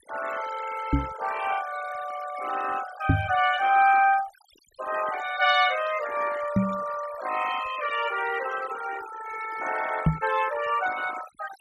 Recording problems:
noise reduction artefacts; signal-to-artefact ratio 13 dB
knock on the microphone; 4 times, first at 1 s; peak +8 dB vs average level

